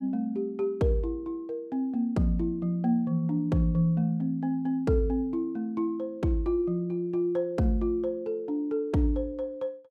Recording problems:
none

